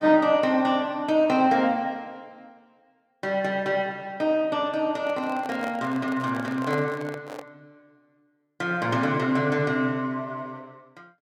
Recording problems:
handling noise; from 5 to 7.5 s; peak -5 dB vs average level

